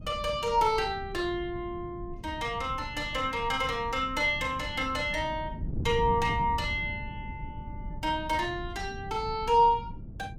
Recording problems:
wind on the microphone; below 160 Hz, SNR 11 dB

